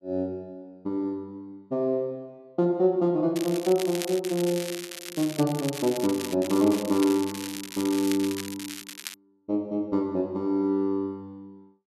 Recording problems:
crackling; from 3.5 to 6.5 s and from 6.5 to 9 s; loose cable, SNR 10 dB

